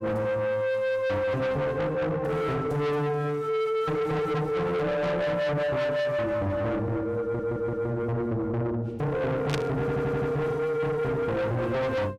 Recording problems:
distortion; soft clipping, signal-to-distortion ratio 7 dB
stutter; at 7 s and at 10 s
static burst; at 9.5 s; peak 0 dB vs average level

